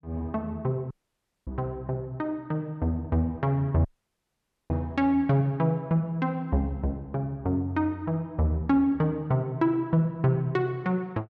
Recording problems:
dropout; at 1 s for 0.5 s and at 4 s for 1 s

